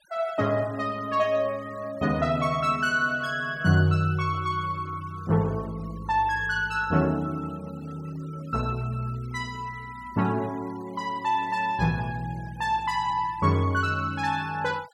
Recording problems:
denoising artefacts; signal-to-artefact ratio 24 dB

